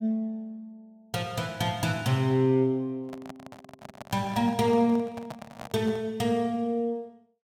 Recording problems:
handling noise; from 3 to 6 s; peak -7 dB vs average level

